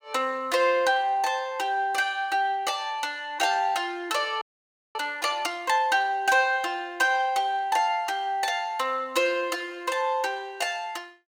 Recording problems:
frozen audio; at 4.5 s for 0.5 s

